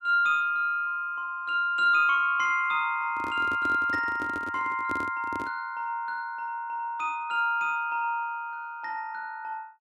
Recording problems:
microphone handling noise; from 3 to 5.5 s; peak -5 dB vs average level

